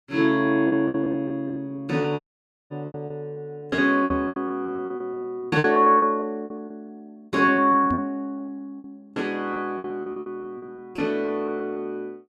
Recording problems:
lost packets; 18% of the sound replaced, filled with repeated pitch periods
dropout; at 2 s for 0.5 s
microphone bump; at 4 s and at 8 s; peak -1 dB vs average level

